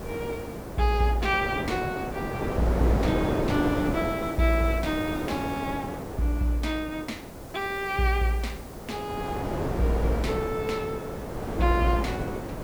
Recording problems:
background hiss; slope -2 dB per octave, SNR 20 dB
wind noise; below 640 Hz, SNR 3 dB

